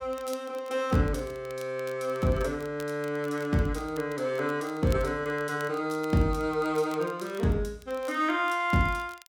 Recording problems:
crackle; vinyl, SNR 23 dB

